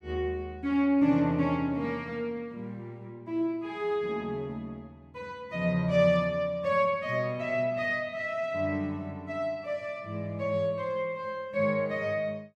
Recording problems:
none

